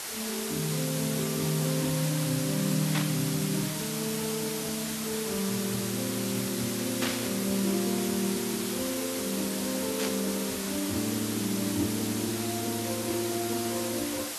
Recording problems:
lossy compression; AAC, log-spectral distance 11 dB, nothing above 13.1 kHz
hiss; slope 0 dB per octave, SNR 1 dB
burst of static; at 3 s, at 7 s and at 10 s; peak +4 dB vs average level

